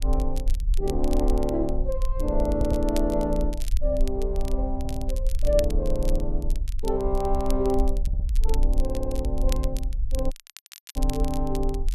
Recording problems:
low-frequency rumble; below 48 Hz, SNR 1 dB
crackling; vinyl, SNR 15 dB
audio stuttering; 4 times, first at 2.5 s
audio cutting out; at 10 s for 0.5 s

